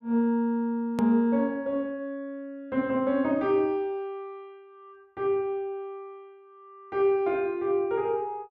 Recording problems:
hard cut with a click; at 1 s

